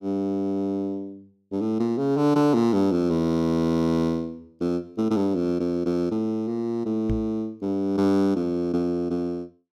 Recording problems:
microphone bump; at 7 s; peak 0 dB vs average level

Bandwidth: 13.5 kHz